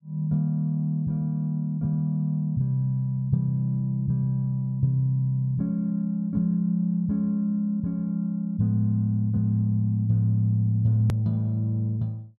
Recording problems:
edit click; at 11 s

